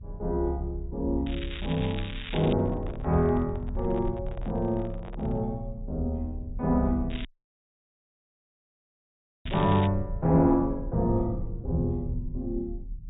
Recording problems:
low-pass filter; nothing above 4 kHz
low-frequency rumble; below 88 Hz, strongest tone 34 Hz, SNR 10 dB
crackle; from 1.5 to 2.5 s and from 7 to 10 s; loose cable, SNR 13 dB
handling noise; from 2.5 to 5.5 s; peak -12 dB vs average level
audio cutting out; at 7.5 s for 2 s

